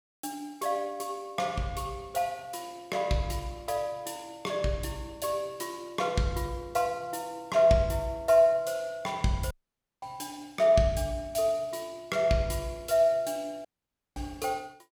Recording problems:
dropout; at 9.5 s for 0.5 s and at 14 s for 0.5 s

